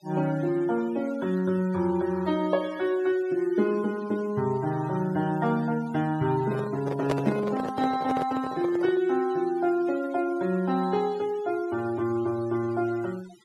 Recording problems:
noise reduction artefacts; signal-to-artefact ratio 20 dB
handling noise; from 6.5 to 9 s; peak +2 dB vs average level

